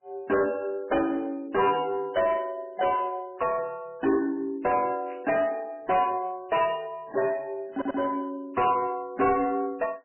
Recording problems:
codec artefacts; MP3, log-spectral distance 2 dB, nothing above 2.6 kHz
distorted audio; soft clipping, signal-to-distortion ratio 12 dB
static burst; at 1.5 s and at 5 s; peak -15 dB vs average level
stutter; at 7.5 s

